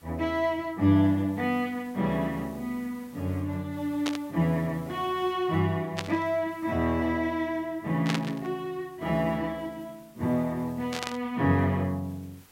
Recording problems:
hiss; slope -2 dB per octave, SNR 27 dB
static burst; 4 times, first at 4 s; peak +1 dB vs average level

